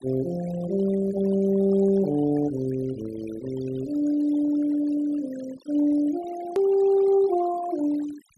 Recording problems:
denoising artefacts; signal-to-artefact ratio 19 dB
edit click; at 6.5 s

